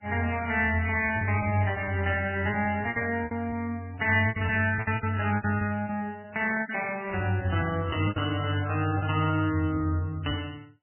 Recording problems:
codec artefacts; MP3, log-spectral distance 4 dB, nothing above 2.7 kHz
lost packets; 12% of the sound replaced, filled with repeated pitch periods
burst of static; at 2 s, at 4 s and at 6.5 s; peak -7 dB vs average level

